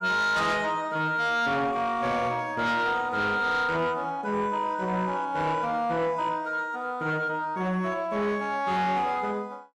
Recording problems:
distortion; soft clipping, signal-to-distortion ratio 10 dB

